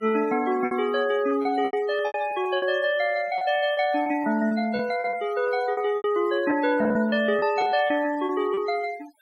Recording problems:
denoising artefacts; signal-to-artefact ratio 19 dB
packet loss; 12% of the sound replaced, filled with repeated pitch periods

